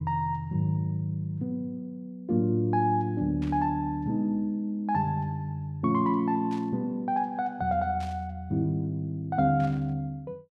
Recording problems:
burst of static; 4 times, first at 3.5 s; peak -14 dB vs average level

